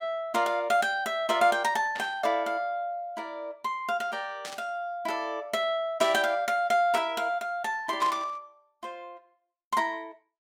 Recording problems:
static burst; 4 times, first at 2 s; peak -6 dB vs average level

